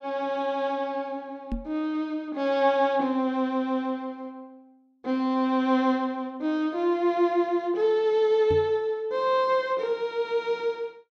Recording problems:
microphone thump; at 1.5 s and at 8.5 s; peak -2 dB vs average level

